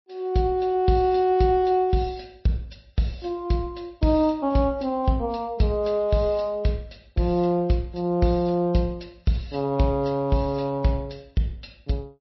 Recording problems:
codec artefacts; MP3, log-spectral distance 2 dB, nothing above 5.7 kHz

